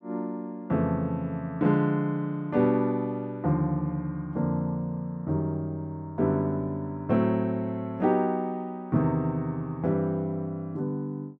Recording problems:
none

